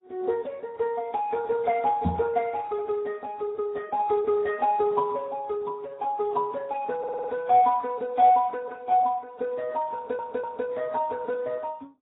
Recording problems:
lossy compression; Speex, then AAC, log-spectral distance 3 dB, nothing above 3.7 kHz
microphone thump; at 2 s; peak +4 dB vs average level
stutter; at 7 s and at 10 s

